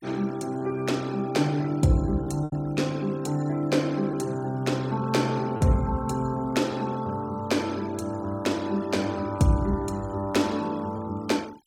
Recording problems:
noise reduction artefacts; signal-to-artefact ratio 22 dB
packet loss; 1.6% of the sound replaced, filled with repeated pitch periods

